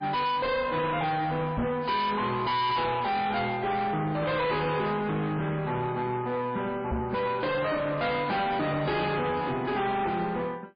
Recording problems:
lossy codec; MP3, log-spectral distance 3 dB
distortion; soft clipping, signal-to-distortion ratio 6 dB
microphone bump; at 1.5 s and at 7 s; peak +2 dB vs average level

